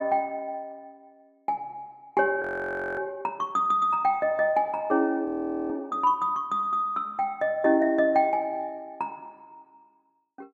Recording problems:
audio freezing; at 2.5 s for 0.5 s and at 5.5 s

